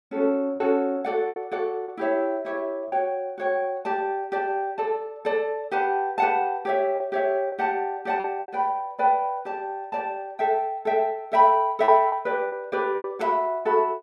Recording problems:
lost packets; 5% of the sound replaced, filled with repeated pitch periods

